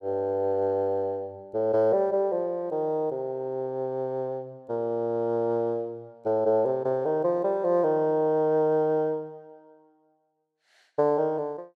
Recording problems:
none

